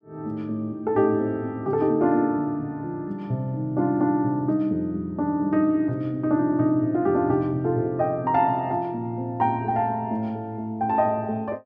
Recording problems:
none

